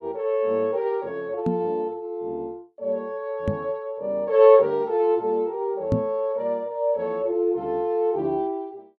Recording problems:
microphone bump; at 1.5 s, at 3.5 s and at 6 s; peak +4 dB vs average level

